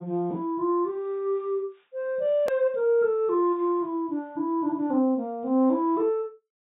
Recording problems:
low-pass filter; nothing above 4 kHz
hard cut with a click; at 2.5 s

